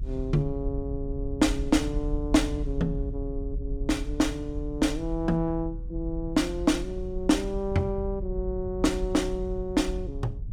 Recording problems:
rumble; below 62 Hz, strongest tone 38 Hz, SNR 7 dB

